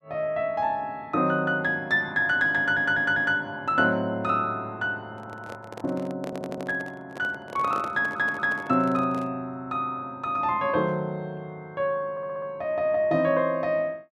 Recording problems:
stutter; 4 times, first at 2.5 s
handling noise; from 5 to 9.5 s; peak -7 dB vs average level

